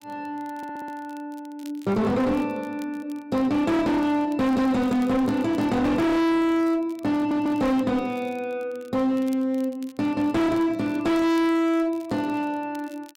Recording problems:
distortion; hard clipping, signal-to-distortion ratio 6 dB
crackle; vinyl, SNR 29 dB
stutter; at 0.5 s and at 7 s

